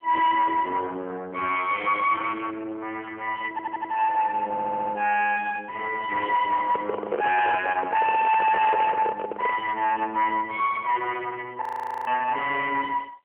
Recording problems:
phone line; 300 Hz to 2.2 kHz, AMR-NB
distorted audio; soft clipping, signal-to-distortion ratio 8 dB
stutter; at 3.5 s and at 4.5 s
microphone handling noise; from 6.5 to 9.5 s; peak +1 dB vs average level
frozen audio; at 12 s

